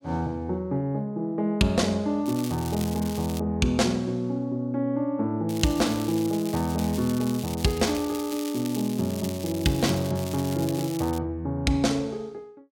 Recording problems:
crackling; from 2.5 to 3.5 s, from 5.5 to 10 s and from 10 to 11 s; loose cable, SNR 13 dB

